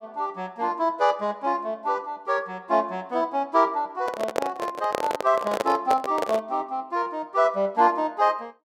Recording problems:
handling noise; from 4 to 6.5 s; peak +4 dB vs average level

